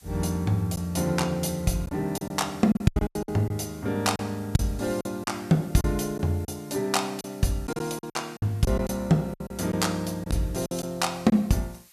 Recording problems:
background hiss; slope +3 dB per octave, SNR 25 dB
lost packets; 9% of the sound replaced, filled with silence

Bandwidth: 14 kHz